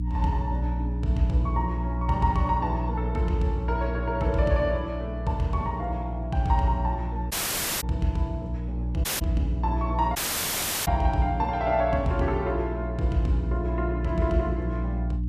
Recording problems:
hum; 60 Hz, harmonics up to 300 Hz, SNR 3 dB
dropout; at 7.5 s for 0.5 s, at 9 s and at 10 s for 0.5 s

